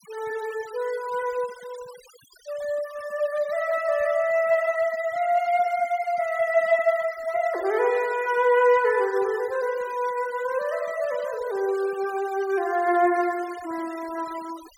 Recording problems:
noise reduction artefacts; signal-to-artefact ratio 20 dB

